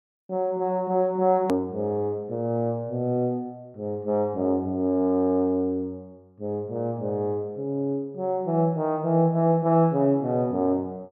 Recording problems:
hard cut with a click; at 1.5 s

